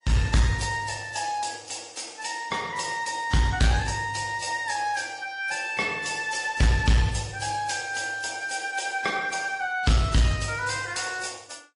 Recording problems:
lossy codec; MP3, then AAC, log-spectral distance 5 dB, nothing above 10.4 kHz
distortion; soft clipping, signal-to-distortion ratio 10 dB

